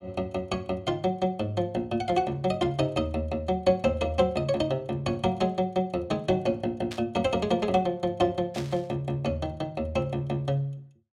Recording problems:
burst of static; at 7 s and at 8.5 s; peak -6 dB vs average level

